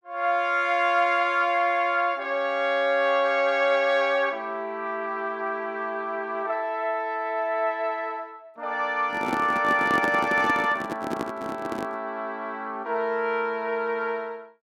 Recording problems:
handling noise; from 9 to 12 s; peak +1 dB vs average level

